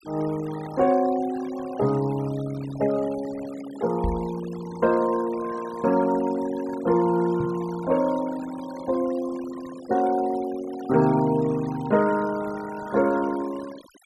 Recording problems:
noise reduction artefacts; signal-to-artefact ratio 18 dB
knock on the microphone; at 4 s and at 7.5 s; peak 0 dB vs average level

